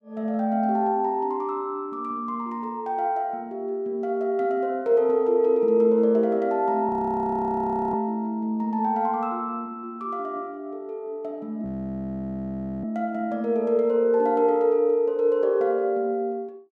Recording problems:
audio freezing; at 7 s for 1 s and at 12 s for 1 s

